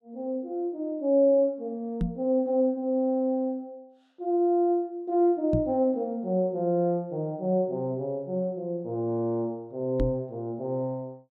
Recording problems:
microphone bump; at 2 s, at 5.5 s and at 10 s; peak +3 dB vs average level

